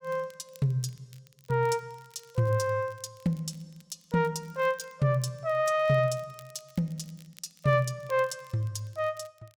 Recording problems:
crackle; vinyl, SNR 28 dB

